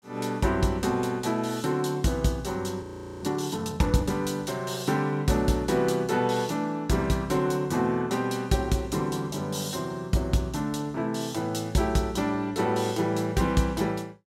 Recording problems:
frozen audio; at 3 s

